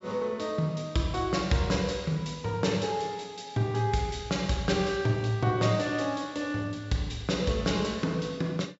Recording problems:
low-pass filter; nothing above 8 kHz

